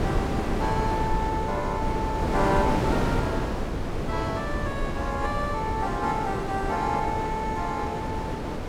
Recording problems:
low-frequency rumble; below 88 Hz, SNR 7 dB
wind noise; below 690 Hz, SNR 0 dB

